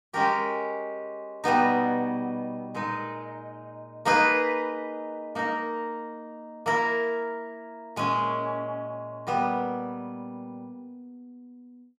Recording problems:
none

